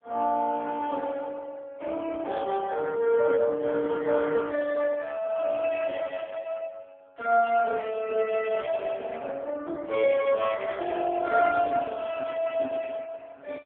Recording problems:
telephone audio; 300 Hz to 3.3 kHz, AMR-NB

